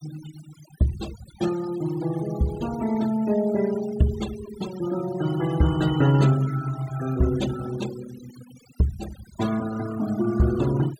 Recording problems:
denoising artefacts; signal-to-artefact ratio 15 dB

